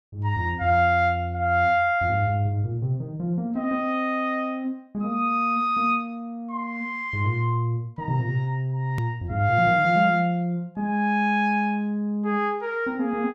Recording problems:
hard cut with a click; at 9 s

